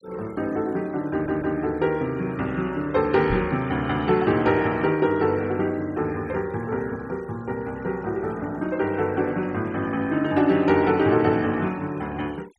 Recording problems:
noise reduction artefacts; signal-to-artefact ratio 25 dB
stutter; at 1 s
knock on the microphone; at 3.5 s; peak -2 dB vs average level

